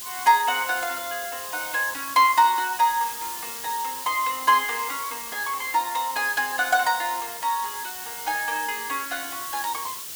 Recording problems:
hiss; slope +1 dB per octave, SNR 8 dB

